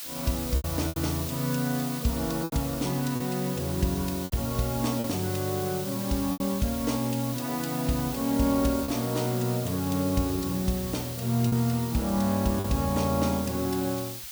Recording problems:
hiss; slope +5 dB per octave, SNR 8 dB
packet loss; 4% of the sound replaced, filled with repeated pitch periods

